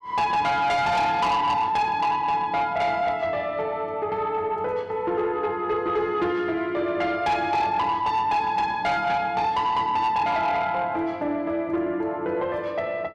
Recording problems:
distorted audio; soft clipping, signal-to-distortion ratio 11 dB

